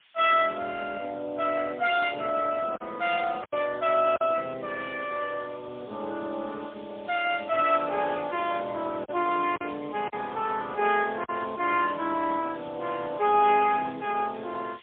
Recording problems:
telephone audio; 170 Hz to 3.5 kHz, AMR-NB, then MP3
background hiss; SNR 25 dB
packet loss; 2% of the sound replaced, filled with silence
handling noise; from 2 to 3.5 s; peak -11 dB vs average level

